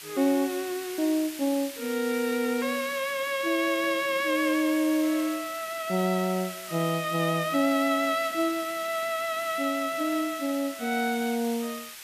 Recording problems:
background hiss; SNR 12 dB

